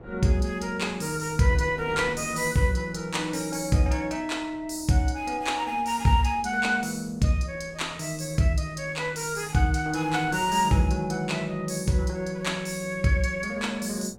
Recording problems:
wind on the microphone; below 440 Hz, SNR 21 dB

